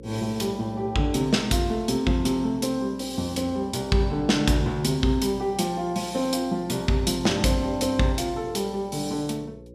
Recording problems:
hum; 60 Hz, harmonics up to 540 Hz, SNR 20 dB

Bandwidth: 14.5 kHz